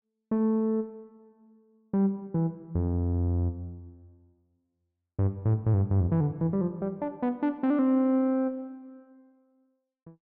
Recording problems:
none

